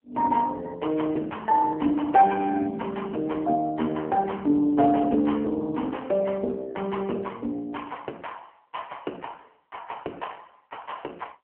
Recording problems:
phone line; 220 Hz to 3.2 kHz, AMR-NB

